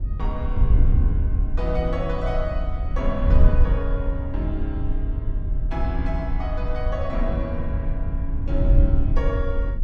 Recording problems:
wind on the microphone; below 70 Hz, SNR -6 dB

